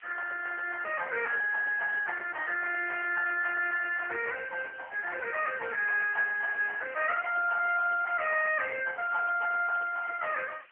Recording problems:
phone line; 370 Hz to 3.1 kHz, AMR-NB
background hiss; SNR 27 dB

